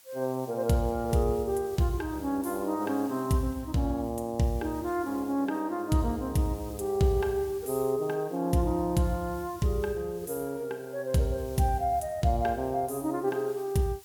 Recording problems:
background hiss; slope +1 dB per octave, SNR 22 dB

